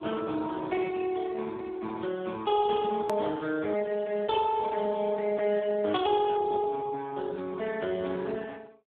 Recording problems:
phone line; 190 Hz to 2.9 kHz, Speex
click at an edit; at 3 s

